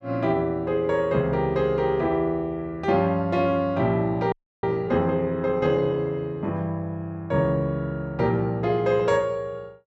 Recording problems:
audio freezing; at 4.5 s

